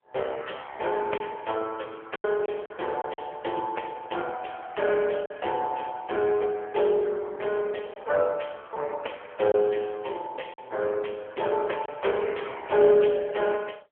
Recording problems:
telephone audio; 340 Hz to 3.2 kHz, AMR-NB
lost packets; 3% of the sound replaced, filled with silence

